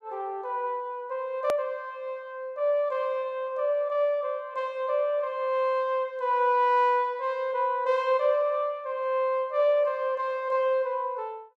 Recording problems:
hard cut with a click; at 1.5 s

